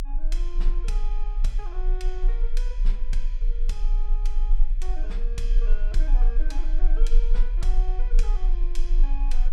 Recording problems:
low-frequency rumble; below 30 Hz, strongest tone 28 Hz, SNR -14 dB

